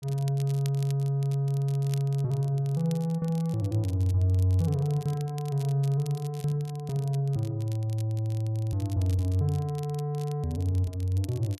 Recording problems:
crackle; vinyl, SNR 22 dB

